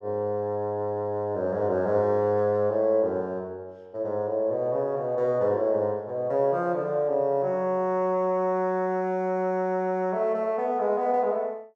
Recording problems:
none

